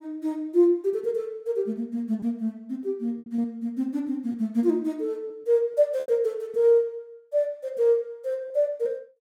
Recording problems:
packet loss; 4% of the sound replaced, filled with repeated pitch periods

